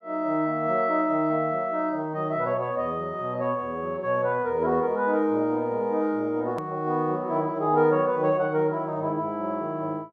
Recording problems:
hard cut with a click; at 6.5 s

